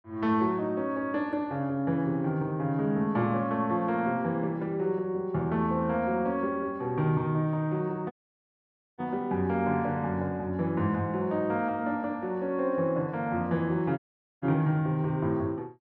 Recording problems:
audio cutting out; at 8 s for 1 s and at 14 s

